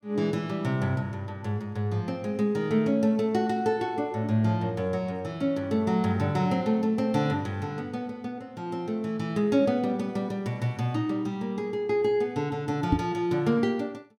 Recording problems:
microphone bump; at 13 s; peak +8 dB vs average level

